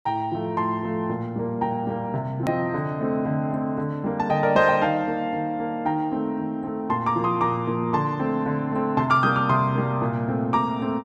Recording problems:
hard cut with a click; at 2.5 s

